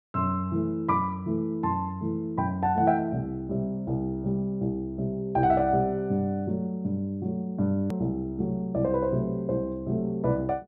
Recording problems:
hard cut with a click; at 8 s

